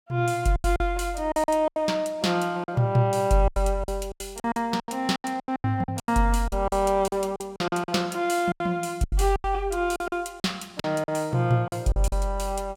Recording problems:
packet loss; 15% of the sound replaced, filled with silence

